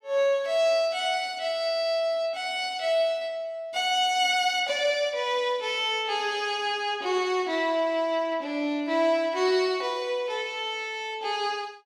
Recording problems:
none

